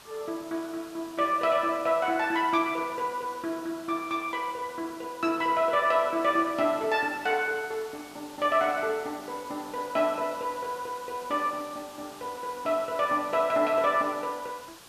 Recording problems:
background hiss; slope -1 dB per octave, SNR 19 dB

